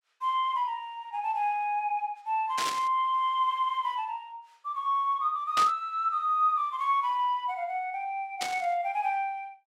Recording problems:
static burst; at 2.5 s, at 5.5 s and at 8.5 s; peak +1 dB vs average level

